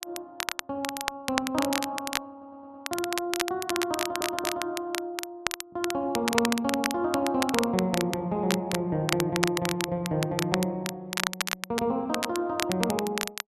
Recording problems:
crackling; vinyl, SNR 3 dB
stutter; at 2.5 s and at 4 s

